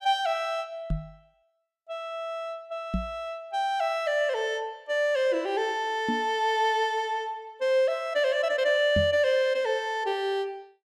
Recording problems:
microphone thump; 4 times, first at 1 s; peak +2 dB vs average level

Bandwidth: 14.5 kHz